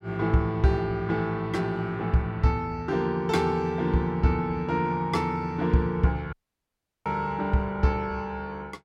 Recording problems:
audio cutting out; at 6.5 s for 0.5 s

